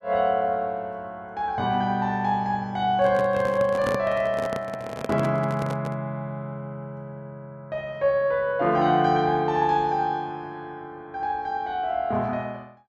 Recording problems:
microphone handling noise; from 3 to 6 s; peak 0 dB vs average level

